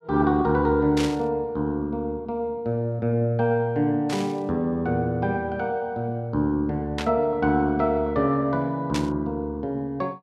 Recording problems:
burst of static; 4 times, first at 1 s; peak -2 dB vs average level

